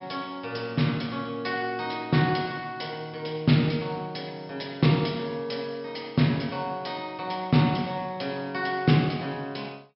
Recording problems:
treble cut off; nothing above 5.4 kHz

